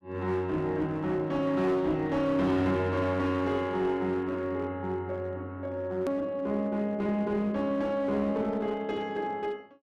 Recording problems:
distorted audio; hard clipping, uneven, signal-to-distortion ratio 10 dB
hard cut with a click; at 6 s

